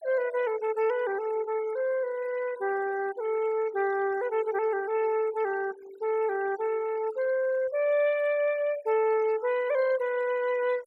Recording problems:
noise reduction artefacts; signal-to-artefact ratio 19 dB

